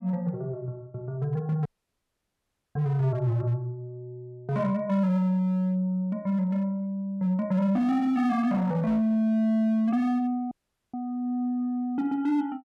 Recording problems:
distorted audio; hard clipping, signal-to-distortion ratio 11 dB
audio cutting out; at 1.5 s for 1 s and at 11 s

